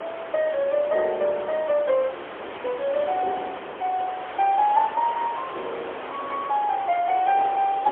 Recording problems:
telephone audio; 320 Hz to 3.2 kHz, AMR-NB, then MP3
hiss; SNR 11 dB
wind on the microphone; below 1.5 kHz, SNR 19 dB

